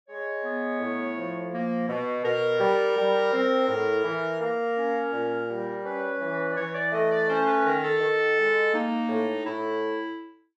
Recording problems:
none

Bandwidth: 13 kHz